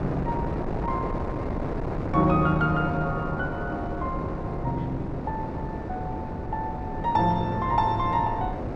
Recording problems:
wind on the microphone; below 520 Hz, SNR 4 dB

